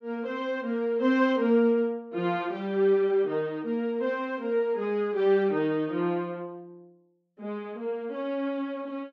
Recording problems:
none

